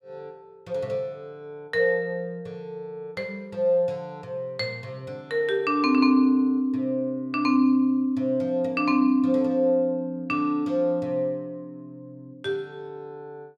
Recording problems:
none

